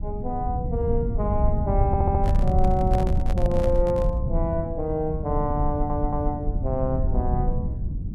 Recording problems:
low-frequency rumble; below 110 Hz, SNR -1 dB
audio stuttering; at 2 s and at 5.5 s
microphone handling noise; from 2 to 4 s; peak -2 dB vs average level

